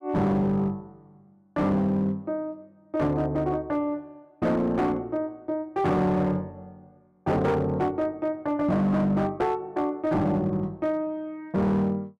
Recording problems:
distortion; hard clipping, signal-to-distortion ratio 11 dB

